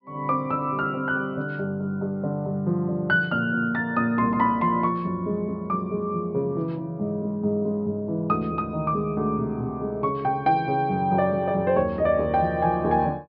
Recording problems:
treble cut off; nothing above 5.5 kHz

